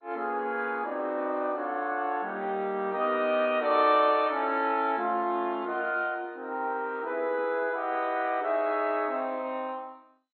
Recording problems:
lossy codec; MP2, log-spectral distance 2 dB, nothing above 3.6 kHz

